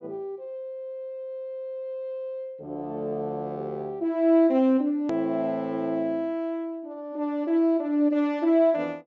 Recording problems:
low-pass filter; nothing above 8 kHz
hard cut with a click; at 5 s

